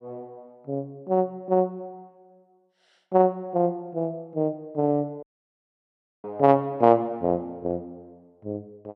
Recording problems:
dropout; at 5 s for 1 s

